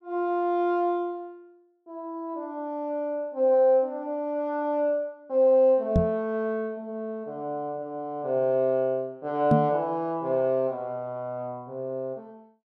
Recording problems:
microphone bump; at 6 s and at 9.5 s; peak +8 dB vs average level

